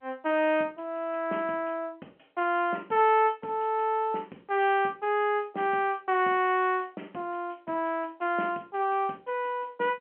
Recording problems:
telephone audio; 220 Hz to 3.3 kHz, G.711

